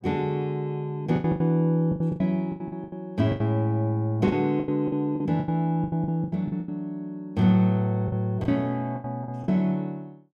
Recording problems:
packet loss; 14% of the sound replaced, filled with the last packet

